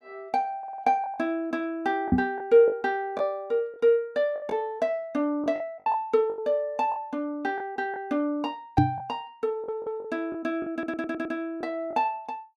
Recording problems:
lost packets; 7% of the sound replaced, filled with the last packet
audio stuttering; at 0.5 s, at 9.5 s and at 11 s
microphone bump; at 2 s and at 9 s; peak +10 dB vs average level

